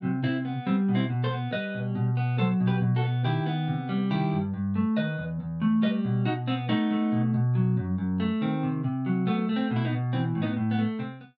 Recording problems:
none

